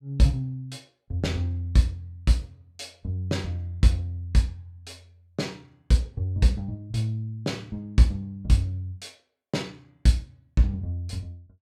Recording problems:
none

